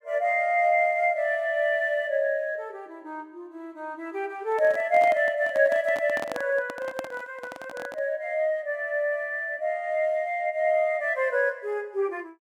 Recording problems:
handling noise; from 4.5 to 8 s; peak -4 dB vs average level

